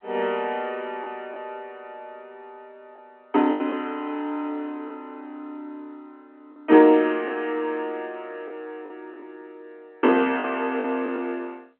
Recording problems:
telephone audio; 220 Hz to 3.3 kHz, G.711
lost packets; 4% of the sound replaced, filled with the last packet

